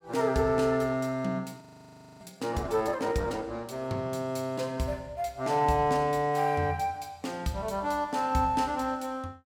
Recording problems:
frozen audio; at 1.5 s for 0.5 s

